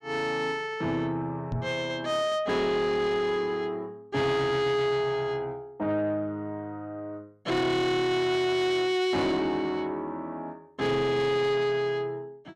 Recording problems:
distortion; soft clipping, signal-to-distortion ratio 11 dB
microphone bump; at 1.5 s; peak 0 dB vs average level

